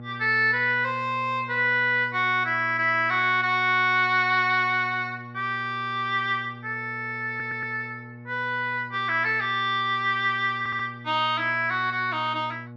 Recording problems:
hum; 60 Hz, harmonics up to 1.1 kHz, SNR 18 dB
audio stuttering; at 7.5 s and at 11 s

